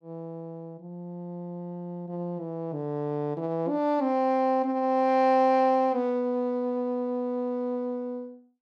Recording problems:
none

